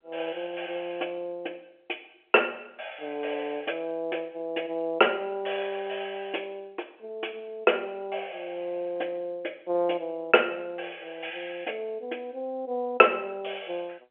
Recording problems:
phone line; 280 Hz to 3.2 kHz, G.711

